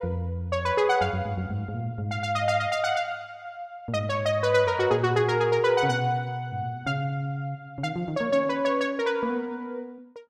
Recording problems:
none

